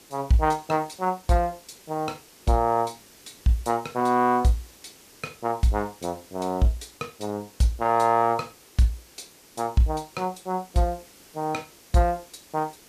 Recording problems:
background hiss; SNR 24 dB

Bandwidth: 14.5 kHz